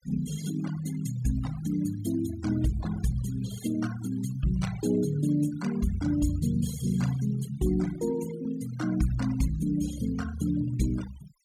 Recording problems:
denoising artefacts; signal-to-artefact ratio 14 dB

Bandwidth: 17 kHz